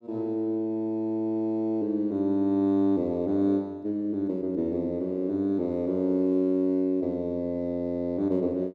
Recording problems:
none

